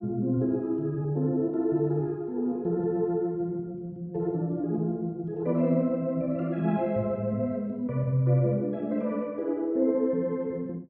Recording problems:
none

